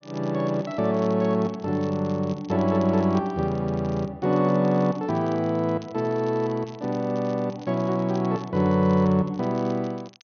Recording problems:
low-pass filter; nothing above 6.4 kHz
crackling; vinyl, SNR 27 dB

